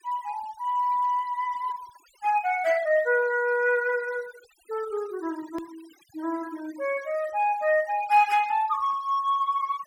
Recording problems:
noise reduction artefacts; signal-to-artefact ratio 22 dB
click at an edit; at 5.5 s

